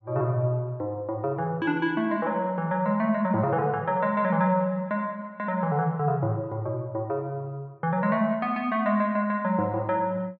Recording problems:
none

